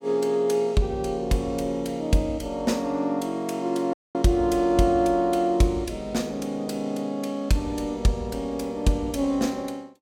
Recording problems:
dropout; at 4 s

